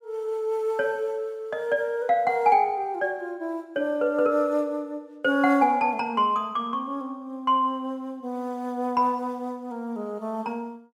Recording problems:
none

